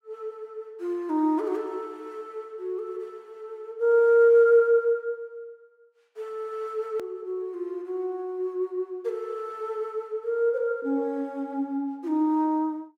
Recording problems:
hard cut with a click; at 7 s

